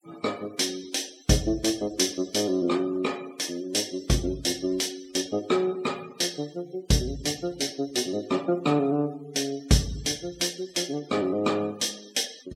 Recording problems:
noise reduction artefacts; signal-to-artefact ratio 21 dB

